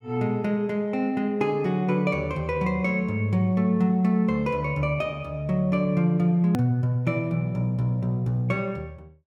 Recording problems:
click at an edit; at 6.5 s

